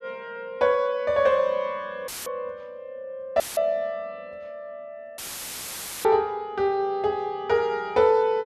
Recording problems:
audio cutting out; at 2 s, at 3.5 s and at 5 s for 1 s; filled with static

